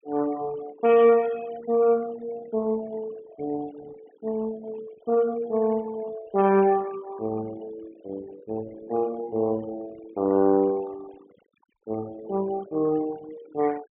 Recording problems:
low-pass filter; nothing above 3.5 kHz
noise reduction artefacts; signal-to-artefact ratio 20 dB

